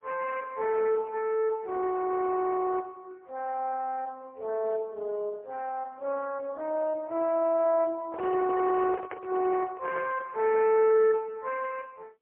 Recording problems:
telephone audio; 320 Hz to 2.6 kHz, AMR-NB, then MP3
handling noise; from 8 to 10 s; peak -7 dB vs average level

